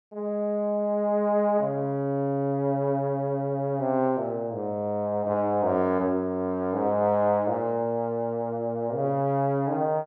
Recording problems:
none

